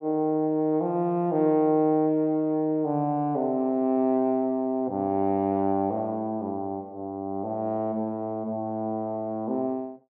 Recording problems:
none

